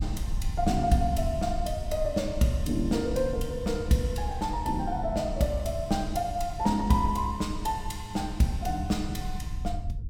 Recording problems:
low-frequency rumble; below 82 Hz, SNR 8 dB

